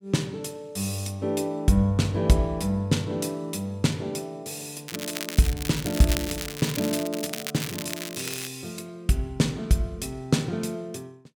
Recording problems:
crackle; from 5 to 8.5 s; loose cable, SNR 6 dB

